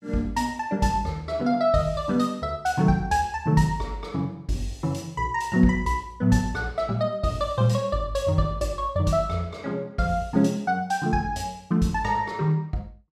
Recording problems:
none

